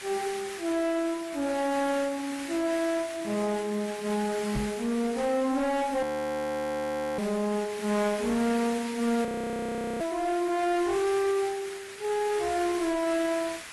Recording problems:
lossy compression; AAC, log-spectral distance 6 dB, nothing above 13.1 kHz
distorted audio; soft clipping, signal-to-distortion ratio 11 dB
background hiss; SNR 12 dB
microphone bump; at 4.5 s; peak 0 dB vs average level
audio freezing; at 6 s for 1 s and at 9.5 s for 1 s

